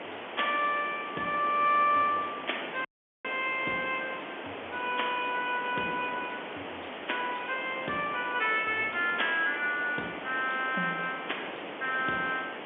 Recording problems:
phone line; 240 Hz to 3.4 kHz, G.711
hiss; SNR 9 dB
wind noise; below 920 Hz, SNR 22 dB
dropout; at 3 s

